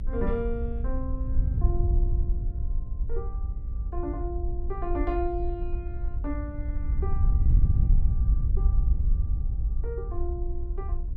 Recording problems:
hum; 60 Hz, harmonics up to 600 Hz, SNR 15 dB
rumble; below 58 Hz, SNR 1 dB
wind on the microphone; below 72 Hz, SNR -6 dB

